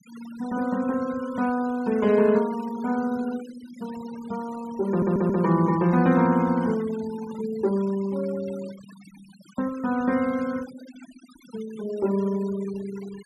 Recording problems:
denoising artefacts; signal-to-artefact ratio 20 dB
audio stuttering; at 5 s

